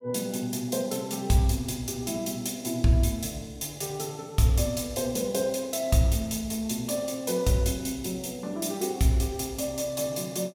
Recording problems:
none

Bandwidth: 16.5 kHz